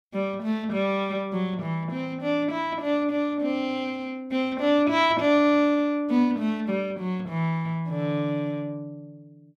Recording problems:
none

